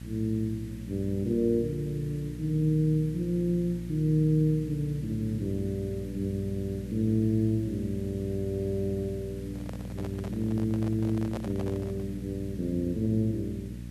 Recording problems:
electrical hum; 60 Hz, harmonics up to 540 Hz, SNR 10 dB
background hiss; SNR 25 dB
handling noise; from 9.5 to 12 s; peak -5 dB vs average level

